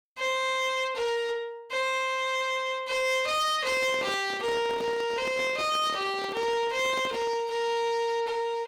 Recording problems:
distorted audio; soft clipping, signal-to-distortion ratio 10 dB
microphone handling noise; from 3.5 to 7.5 s; peak -5 dB vs average level

